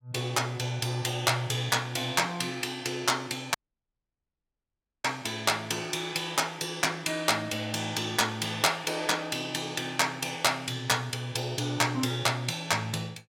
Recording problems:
dropout; at 3.5 s for 1.5 s

